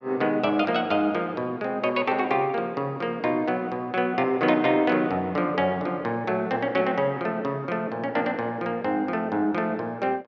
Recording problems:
none

